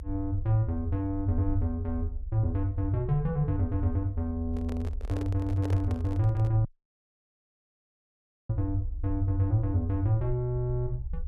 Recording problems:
rumble; below 60 Hz, strongest tone 30 Hz, SNR 10 dB
handling noise; from 4.5 to 6.5 s; peak -6 dB vs average level
dropout; at 6.5 s for 2 s

